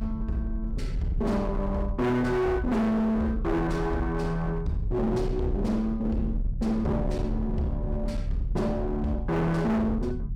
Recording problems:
distorted audio; hard clipping, uneven, signal-to-distortion ratio 7 dB
rumble; below 94 Hz, strongest tone 36 Hz, SNR 6 dB

